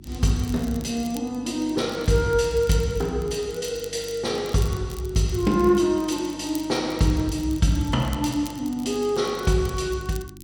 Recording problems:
mains hum; 50 Hz, harmonics up to 350 Hz, SNR 21 dB
crackling; vinyl, SNR 21 dB

